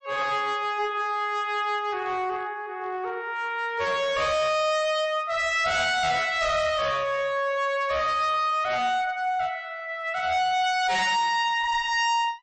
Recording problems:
lossy compression; MP3, log-spectral distance 2 dB, nothing above 8 kHz
distorted audio; hard clipping, uneven, signal-to-distortion ratio 7 dB

